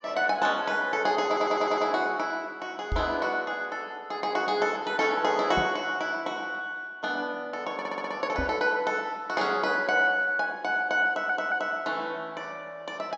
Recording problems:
treble cut off; nothing above 8 kHz
audio stuttering; at 1.5 s, at 8 s and at 11 s
microphone thump; at 3 s, at 5.5 s and at 8.5 s; peak 0 dB vs average level

